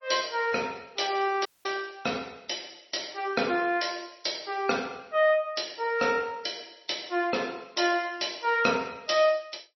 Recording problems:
lossy compression; MP3, log-spectral distance 8 dB, nothing above 5.8 kHz
dropout; at 1.5 s

